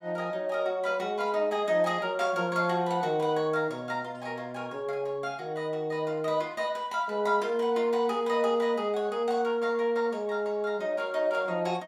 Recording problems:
none

